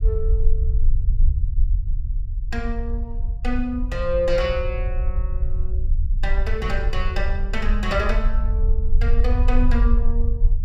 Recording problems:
low-frequency rumble; below 54 Hz, SNR -3 dB

